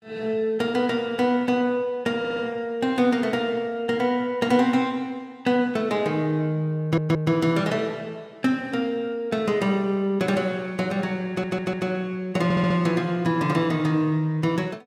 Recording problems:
stutter; 4 times, first at 2 s

